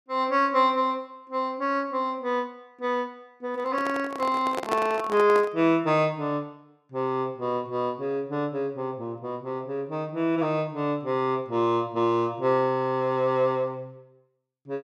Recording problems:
microphone handling noise; from 3.5 to 5.5 s; peak +1 dB vs average level

